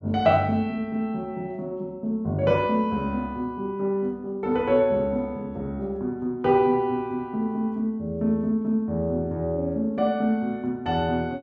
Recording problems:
none

